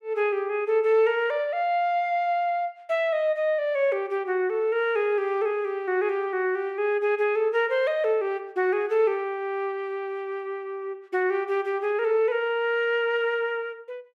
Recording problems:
none

